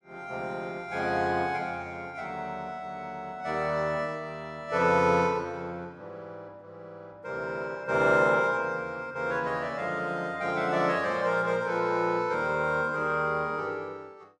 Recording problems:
none

